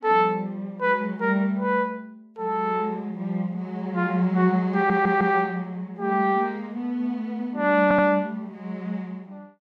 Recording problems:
audio stuttering; at 5 s and at 8 s

